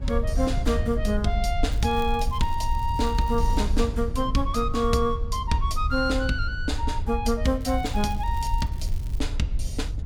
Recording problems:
low-frequency rumble; below 66 Hz, SNR 4 dB
wind noise; below 100 Hz, SNR 10 dB
crackling; from 1.5 to 3.5 s and from 7.5 to 9 s; loose cable, SNR 23 dB

